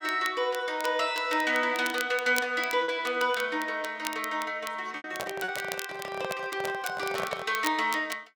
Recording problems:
crackling; vinyl, SNR 13 dB
packet loss; 1.9% of the sound replaced, filled with repeated pitch periods
microphone handling noise; from 5 to 7.5 s; peak -1 dB vs average level

